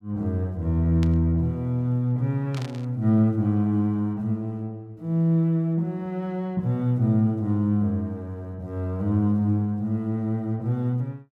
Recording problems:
static burst; at 1 s and at 2.5 s; peak -10 dB vs average level

